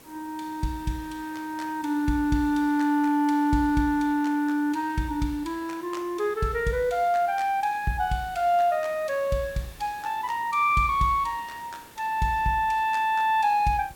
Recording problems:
background hiss; slope -4 dB per octave, SNR 24 dB

